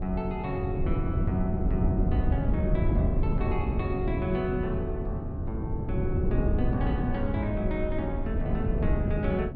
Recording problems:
rumble; below 78 Hz, SNR 7 dB
wind on the microphone; below 170 Hz, SNR -2 dB

